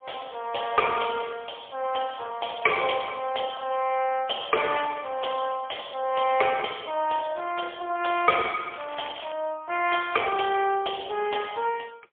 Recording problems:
telephone audio; 340 Hz to 3.4 kHz, AMR-NB, then MP3
crackling; at 8.5 s; loose cable, SNR 17 dB

